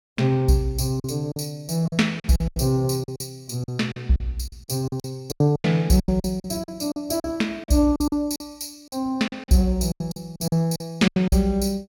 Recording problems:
packet loss; 15% of the sound replaced, filled with silence

